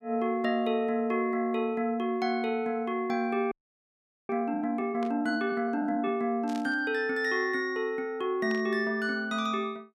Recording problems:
audio freezing; at 3.5 s for 1 s
static burst; at 5 s, at 6.5 s and at 8.5 s; peak -11 dB vs average level

